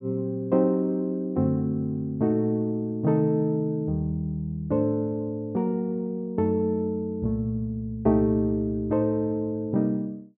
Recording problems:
none

